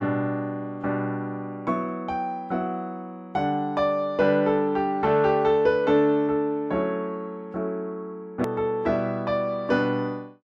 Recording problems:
edit click; at 8.5 s

